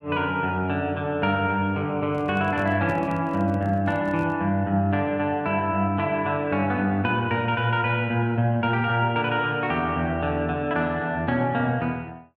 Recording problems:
microphone handling noise; from 2 to 4.5 s; peak -8 dB vs average level

